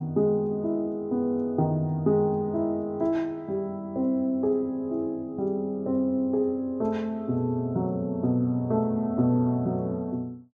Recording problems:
none

